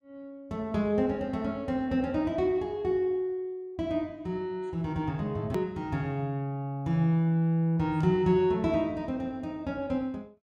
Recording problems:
click at an edit; at 5.5 s

